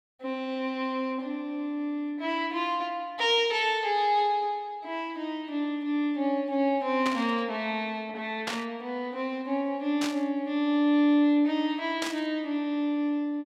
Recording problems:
static burst; 4 times, first at 7 s; peak 0 dB vs average level

